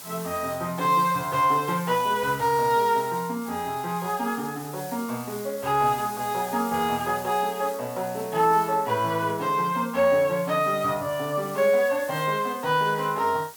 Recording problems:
background hiss; slope -1 dB per octave, SNR 16 dB

